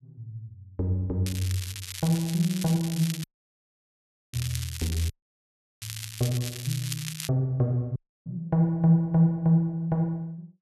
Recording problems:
crackling; from 1.5 to 7.5 s; loose cable, SNR 10 dB
dropout; at 3 s for 1 s, at 5 s for 0.5 s and at 8 s

